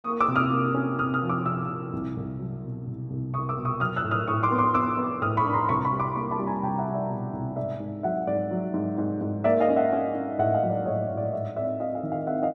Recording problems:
none

